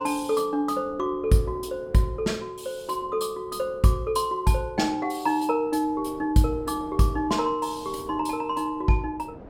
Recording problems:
wind noise; below 560 Hz, SNR 22 dB

